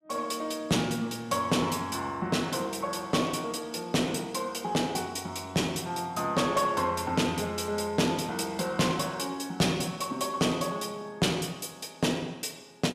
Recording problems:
distorted audio; soft clipping, signal-to-distortion ratio 11 dB

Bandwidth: 15 kHz